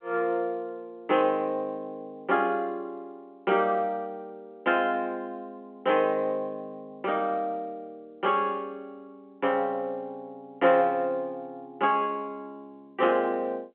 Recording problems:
telephone audio; 220 Hz to 3.7 kHz, G.711

